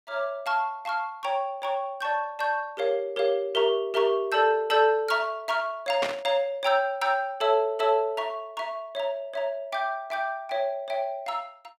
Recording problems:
burst of static; at 6 s; peak +1 dB vs average level

